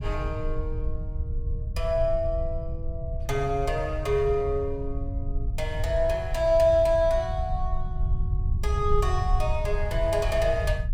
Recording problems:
rumble; below 78 Hz, SNR 5 dB

